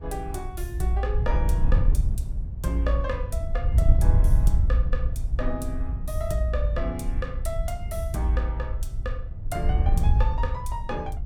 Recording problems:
wind noise; below 74 Hz, SNR -3 dB

